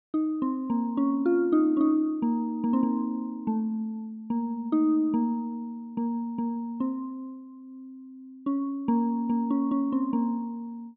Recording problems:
none

